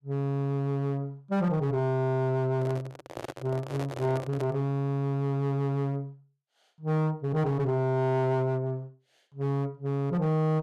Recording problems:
distorted audio; hard clipping, signal-to-distortion ratio 11 dB
microphone handling noise; from 2.5 to 4.5 s; peak -5 dB vs average level

